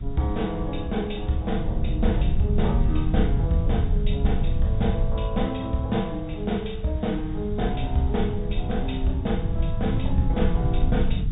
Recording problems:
treble cut off; nothing above 4 kHz
hiss; SNR 27 dB
rumble; below 96 Hz, SNR 0 dB

